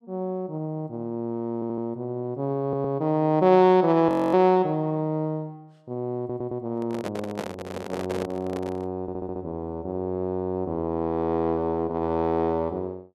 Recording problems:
stutter; 4 times, first at 1.5 s
frozen audio; at 4 s
microphone handling noise; from 6.5 to 9 s; peak -3 dB vs average level

